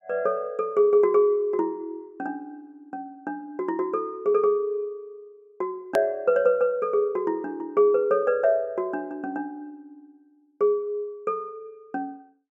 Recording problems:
edit click; at 6 s

